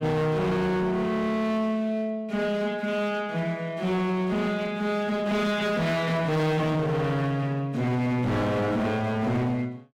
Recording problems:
distorted audio; hard clipping, signal-to-distortion ratio 7 dB

